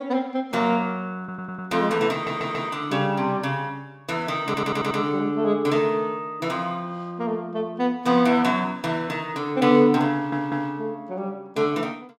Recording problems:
audio stuttering; 4 times, first at 1 s

